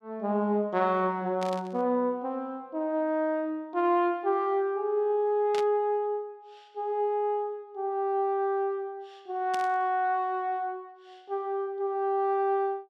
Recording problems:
burst of static; at 1.5 s, at 5.5 s and at 9.5 s; peak -5 dB vs average level

